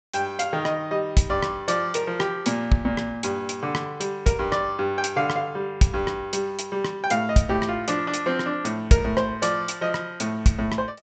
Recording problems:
low-pass filter; nothing above 8 kHz

